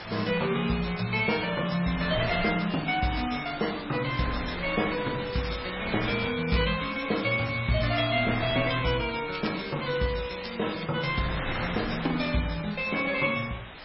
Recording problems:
lossy compression; MP3, log-spectral distance 16 dB, nothing above 5.3 kHz
hiss; SNR 13 dB
wind on the microphone; below 2 kHz, SNR 12 dB
crackling; from 5.5 to 8 s and from 9.5 to 11 s; loose cable, SNR 14 dB

